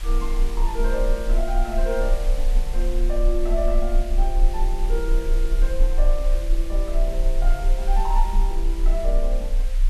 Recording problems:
hiss; SNR 12 dB
rumble; below 34 Hz, strongest tone 28 Hz, SNR -5 dB

